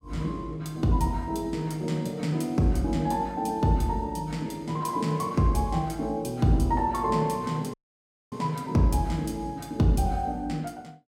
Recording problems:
audio cutting out; at 7.5 s for 0.5 s

